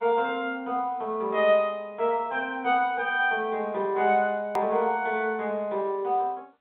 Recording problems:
telephone audio; 150 Hz to 3.7 kHz, G.711
click at an edit; at 4.5 s

